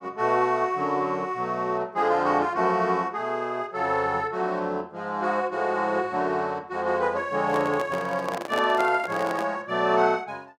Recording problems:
microphone handling noise; from 7.5 to 9.5 s; peak -2 dB vs average level

